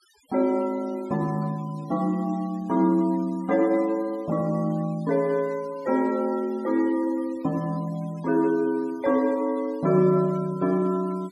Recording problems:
noise reduction artefacts; signal-to-artefact ratio 26 dB

